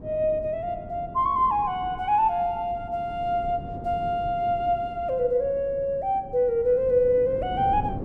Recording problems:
wind noise; below 300 Hz, SNR 15 dB

